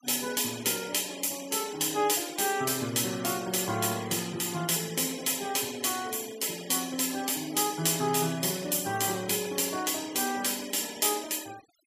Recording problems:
denoising artefacts; signal-to-artefact ratio 18 dB

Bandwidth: 15 kHz